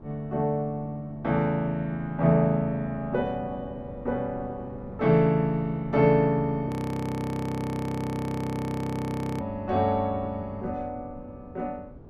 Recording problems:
wind noise; below 330 Hz, SNR 18 dB
audio freezing; at 6.5 s for 2.5 s

